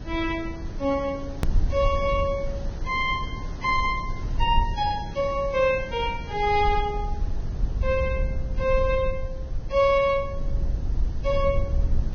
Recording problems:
lossy compression; Vorbis, log-spectral distance 2 dB, nothing above 6.2 kHz
hiss; SNR 16 dB
rumble; below 68 Hz, SNR 6 dB
click at an edit; at 1.5 s

